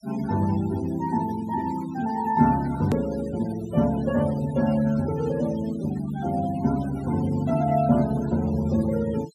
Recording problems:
denoising artefacts; signal-to-artefact ratio 16 dB
click at an edit; at 3 s

